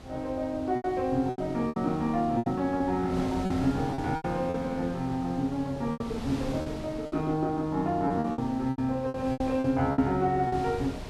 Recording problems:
wind noise; below 650 Hz, SNR 13 dB
lost packets; 11% of the sound replaced, filled with repeated pitch periods

